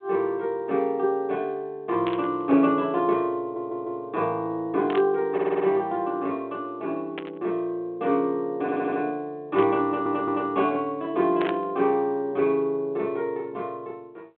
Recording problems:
phone line; 220 Hz to 3.5 kHz, G.726
burst of static; 5 times, first at 2 s; peak -4 dB vs average level
audio stuttering; 4 times, first at 3.5 s

